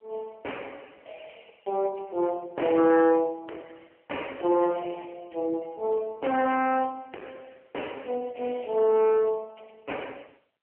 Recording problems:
telephone audio; 340 Hz to 3.1 kHz, AMR-NB
distortion; hard clipping, uneven, signal-to-distortion ratio 9 dB

